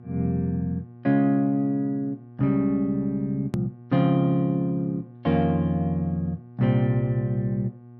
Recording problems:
electrical hum; 60 Hz, harmonics up to 840 Hz, SNR 21 dB
click at an edit; at 3.5 s

